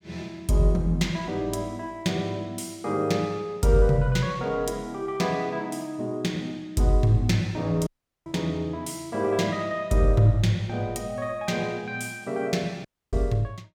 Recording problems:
dropout; at 8 s and at 13 s

